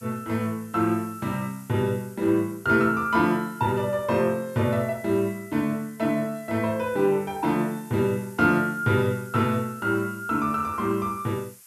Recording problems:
background hiss; SNR 23 dB

